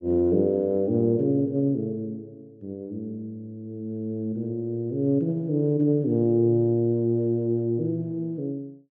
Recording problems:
none

